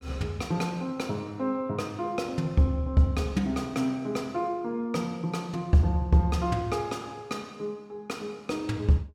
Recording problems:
none

